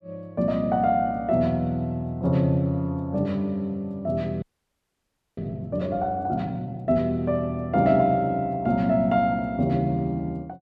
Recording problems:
audio freezing; at 4.5 s for 1 s

